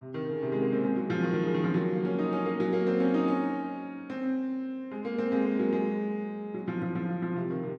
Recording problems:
none

